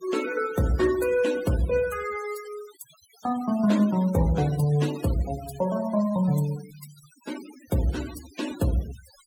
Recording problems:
denoising artefacts; signal-to-artefact ratio 17 dB

